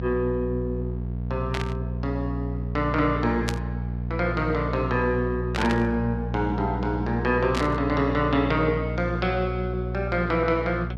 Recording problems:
hum; 60 Hz, harmonics up to 660 Hz, SNR 4 dB
static burst; 4 times, first at 1.5 s; peak +1 dB vs average level

